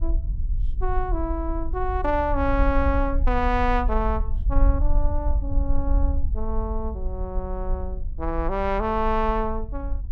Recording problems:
wind on the microphone; below 54 Hz, SNR 1 dB

